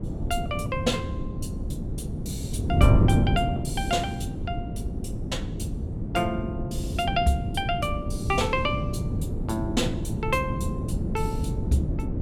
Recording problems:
wind noise; below 210 Hz, SNR 0 dB

